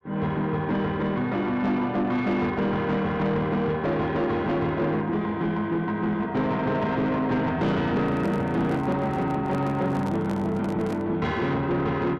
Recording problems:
distorted audio; soft clipping, signal-to-distortion ratio 10 dB
microphone handling noise; from 8 to 11 s; peak -6 dB vs average level

